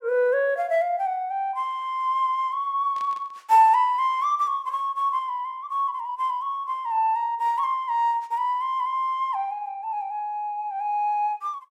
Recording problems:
burst of static; at 3 s; peak -17 dB vs average level

